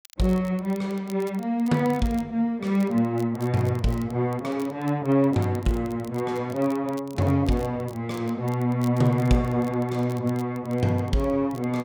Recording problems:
crackling; vinyl, SNR 25 dB

